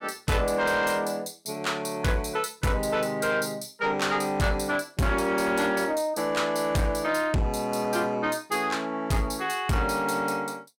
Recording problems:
distortion; soft clipping, signal-to-distortion ratio 10 dB

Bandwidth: 16.5 kHz